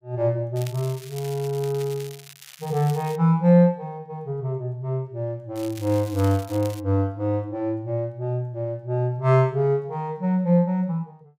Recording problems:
crackling; from 0.5 to 3 s and from 5.5 to 7 s; loose cable, SNR 19 dB

